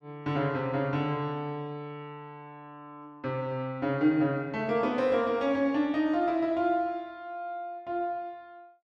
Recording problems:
none

